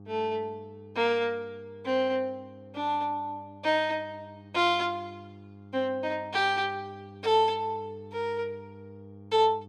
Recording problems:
hum; 50 Hz, harmonics up to 800 Hz, SNR 20 dB

